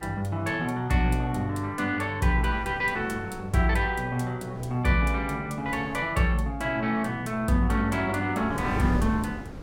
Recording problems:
wind noise; below 360 Hz, SNR 14 dB

